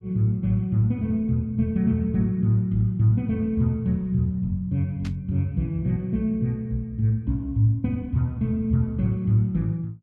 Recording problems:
burst of static; at 5 s; peak -13 dB vs average level

